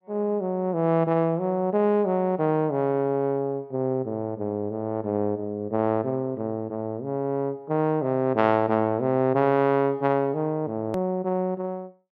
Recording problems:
hard cut with a click; at 11 s

